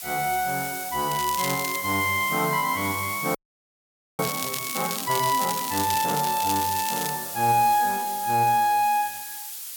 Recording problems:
background hiss; slope +4 dB per octave, SNR 8 dB
crackle; at 1 s and from 4 to 7 s; loose cable, SNR 7 dB
audio freezing; at 3.5 s for 1 s

